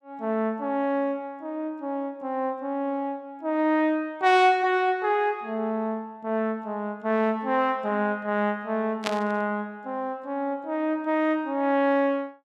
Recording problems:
static burst; at 9 s; peak +1 dB vs average level

